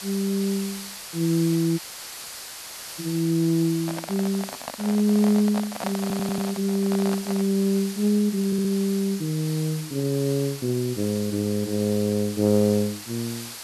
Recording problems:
hiss; slope +1 dB per octave, SNR 12 dB
dropout; at 2 s for 1 s
handling noise; from 4 to 7.5 s; peak -1 dB vs average level
stutter; at 6 s and at 8.5 s
crackle; from 7 to 10 s, at 11 s and at 12 s; loose cable, SNR 26 dB

